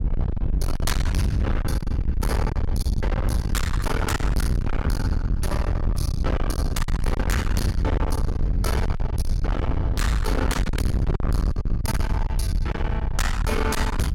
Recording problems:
distortion; hard clipping, signal-to-distortion ratio 7 dB
wind noise; below 110 Hz, SNR -3 dB

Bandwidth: 16 kHz